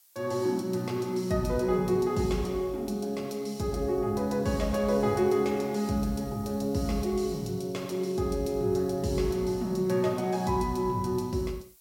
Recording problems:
background hiss; slope +2 dB per octave, SNR 27 dB

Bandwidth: 16.5 kHz